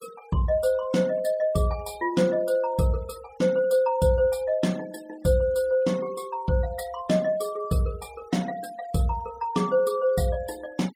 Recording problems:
denoising artefacts; signal-to-artefact ratio 24 dB

